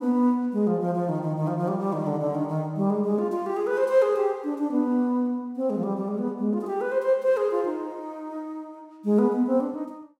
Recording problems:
none

